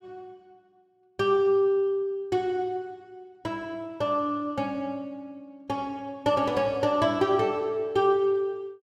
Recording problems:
none

